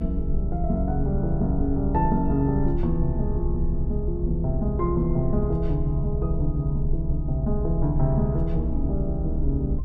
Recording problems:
low-frequency rumble; below 64 Hz, strongest tone 22 Hz, SNR 3 dB

